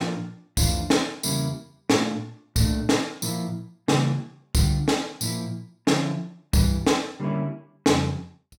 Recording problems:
none

